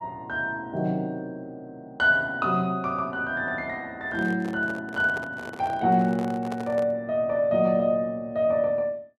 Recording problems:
microphone handling noise; from 4 to 7 s; peak -7 dB vs average level

